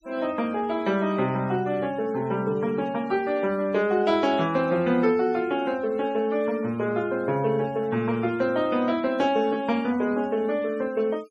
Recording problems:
denoising artefacts; signal-to-artefact ratio 24 dB

